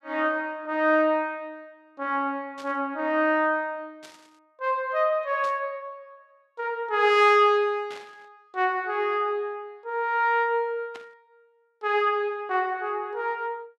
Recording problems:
static burst; 5 times, first at 2.5 s; peak -14 dB vs average level

